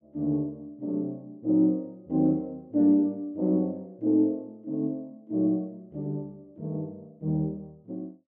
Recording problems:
none

